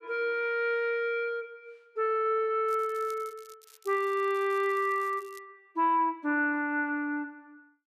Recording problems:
crackle; from 2.5 to 5.5 s; loose cable, SNR 26 dB

